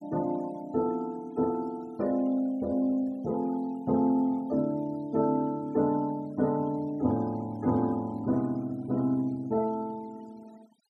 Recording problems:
denoising artefacts; signal-to-artefact ratio 25 dB

